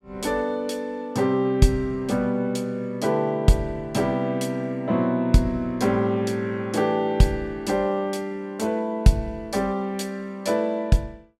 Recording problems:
none

